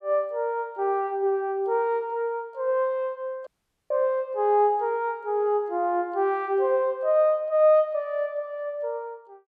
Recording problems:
dropout; at 3.5 s

